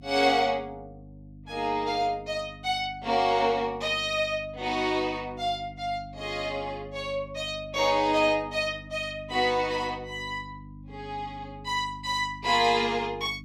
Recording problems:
hum; 50 Hz, harmonics up to 300 Hz, SNR 18 dB

